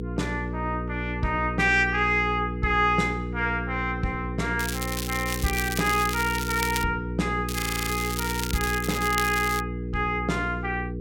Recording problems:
mains hum; 60 Hz, harmonics up to 480 Hz, SNR 6 dB
crackle; from 4.5 to 7 s and from 7.5 to 9.5 s; loose cable, SNR 6 dB
frozen audio; at 7.5 s

